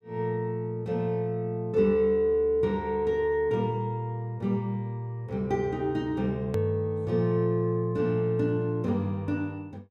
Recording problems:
click at an edit; at 6.5 s

